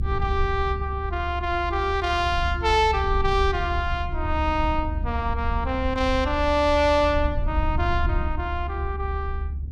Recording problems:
low-frequency rumble; below 74 Hz, SNR 5 dB

